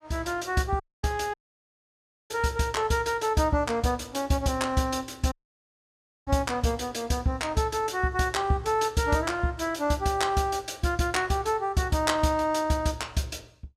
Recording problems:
dropout; at 1 s, at 1.5 s for 1 s and at 5.5 s for 1 s

